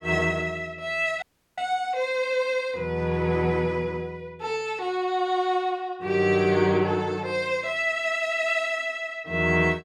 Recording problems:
dropout; at 1 s

